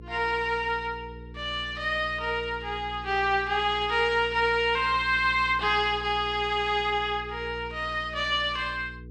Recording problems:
electrical hum; 60 Hz, harmonics up to 480 Hz, SNR 17 dB

